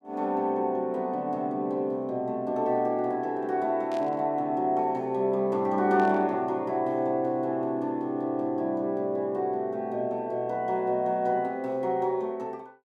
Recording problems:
static burst; at 4 s and at 6 s; peak -14 dB vs average level

